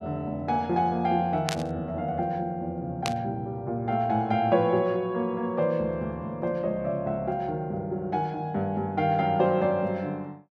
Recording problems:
burst of static; at 1.5 s and at 3 s; peak +2 dB vs average level

